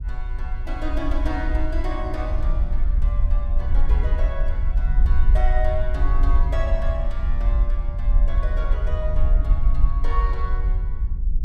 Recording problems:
low-frequency rumble; below 52 Hz, SNR -9 dB

